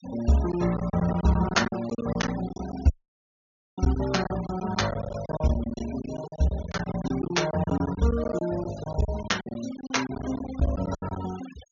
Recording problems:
treble missing; nothing above 6.8 kHz
denoising artefacts; signal-to-artefact ratio 15 dB
packet loss; 15% of the sound replaced, filled with silence
audio cutting out; at 3 s for 1 s

